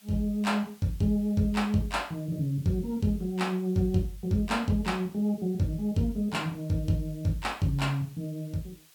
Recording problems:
hiss; slope +1 dB per octave, SNR 26 dB

